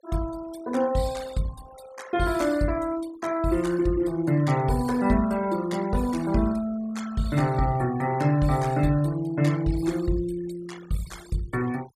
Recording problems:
noise reduction artefacts; signal-to-artefact ratio 19 dB

